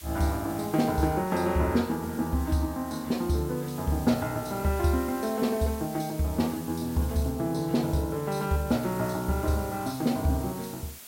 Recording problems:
background hiss; slope +1 dB per octave, SNR 16 dB

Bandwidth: 16 kHz